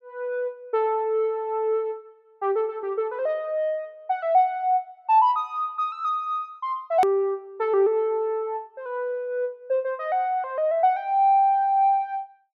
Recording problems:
click at an edit; at 7 s

